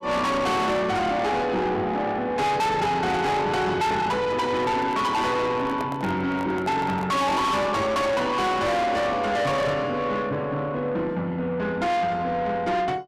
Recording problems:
distortion; soft clipping, signal-to-distortion ratio 6 dB
microphone handling noise; from 4.5 to 7.5 s; peak -6 dB vs average level

